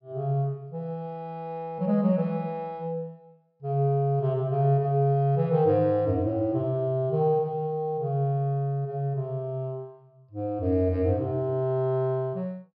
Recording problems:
low-pass filter; nothing above 5.5 kHz

